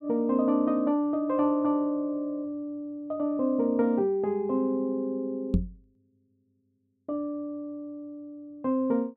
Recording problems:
microphone thump; at 5.5 s; peak +7 dB vs average level

